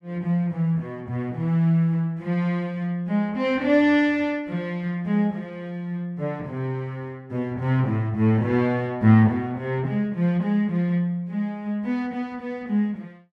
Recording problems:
none

